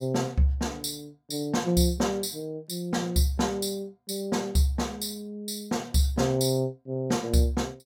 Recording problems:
none

